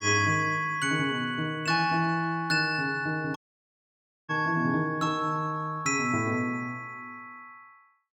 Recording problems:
audio cutting out; at 3.5 s for 1 s

